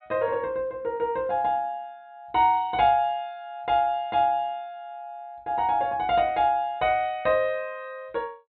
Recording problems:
treble cut off; nothing above 4.2 kHz

